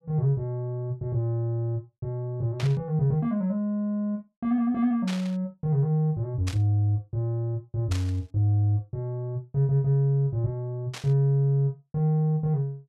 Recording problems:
static burst; 5 times, first at 2.5 s; peak -6 dB vs average level

